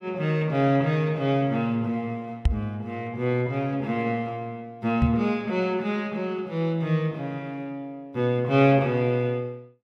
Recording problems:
microphone thump; at 2.5 s and at 5 s; peak +7 dB vs average level

